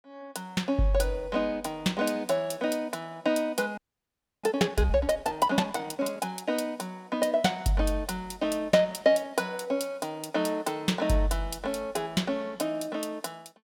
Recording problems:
audio freezing; at 4 s for 0.5 s

